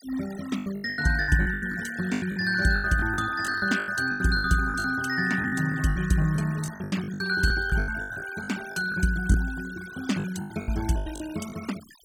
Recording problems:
noise reduction artefacts; signal-to-artefact ratio 17 dB
lost packets; 18% of the sound replaced, filled with the last packet

